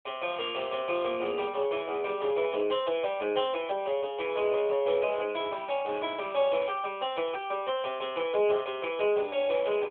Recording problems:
telephone audio; 260 Hz to 3.5 kHz, AMR-NB

